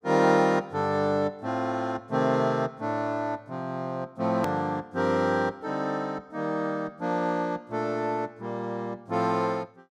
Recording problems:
edit click; at 4.5 s

